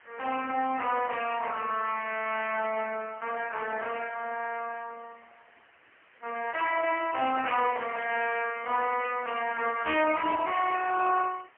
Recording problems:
telephone audio; 240 Hz to 3.1 kHz, AMR-NB, then MP3
background hiss; SNR 27 dB

